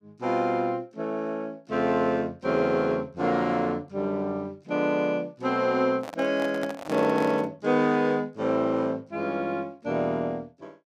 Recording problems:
microphone handling noise; from 6 to 7.5 s; peak -4 dB vs average level

